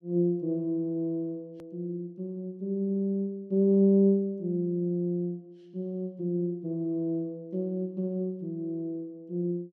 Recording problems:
edit click; at 1.5 s

